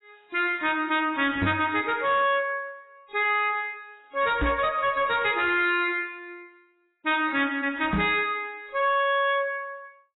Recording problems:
lossy codec; AAC, log-spectral distance 3 dB, nothing above 3.5 kHz
distortion; hard clipping, signal-to-distortion ratio 10 dB
microphone bump; at 1.5 s, at 4.5 s and at 8 s; peak +1 dB vs average level

